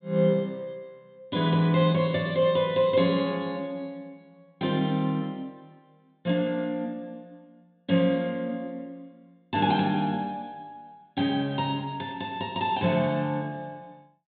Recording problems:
treble missing; nothing above 4 kHz

